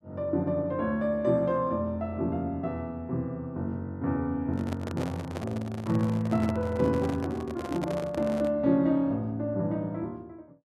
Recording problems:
microphone handling noise; from 4.5 to 8.5 s; peak -3 dB vs average level

